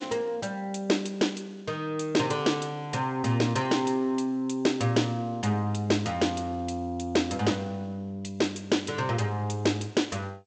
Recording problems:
lossy compression; G.722, log-spectral distance 3 dB, nothing above 7.8 kHz

